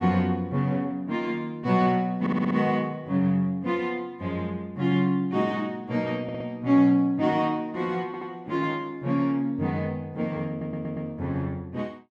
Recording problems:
audio stuttering; 4 times, first at 2 s

